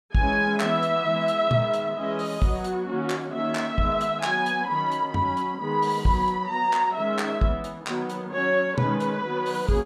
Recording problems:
none

